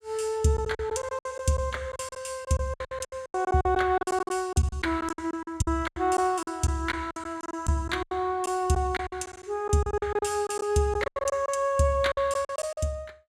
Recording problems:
packet loss; 16% of the sound replaced, filled with silence

